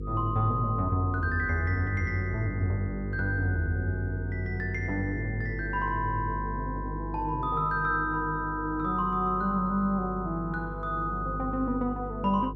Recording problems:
electrical hum; 50 Hz, harmonics up to 500 Hz, SNR 8 dB

